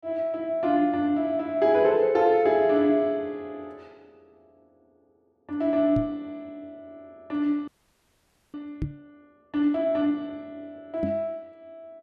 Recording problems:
microphone thump; at 6 s, at 9 s and at 11 s; peak -1 dB vs average level
frozen audio; at 7.5 s for 1 s

